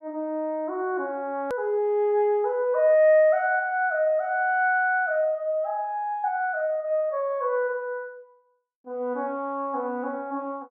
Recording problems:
edit click; at 1.5 s

